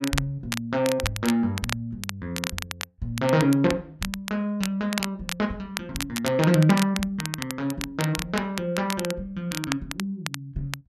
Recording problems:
crackling; vinyl, SNR 7 dB

